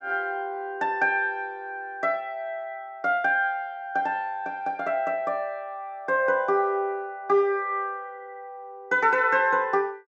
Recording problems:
low-pass filter; nothing above 7.8 kHz

